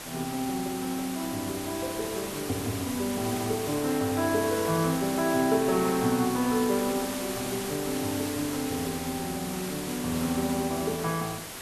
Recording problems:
hiss; slope -2 dB per octave, SNR 6 dB

